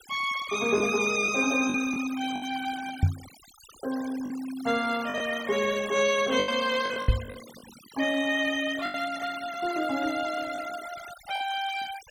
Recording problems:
denoising artefacts; signal-to-artefact ratio 15 dB
packet loss; 6% of the sound replaced, filled with the last packet
knock on the microphone; at 3 s and at 7 s; peak +9 dB vs average level

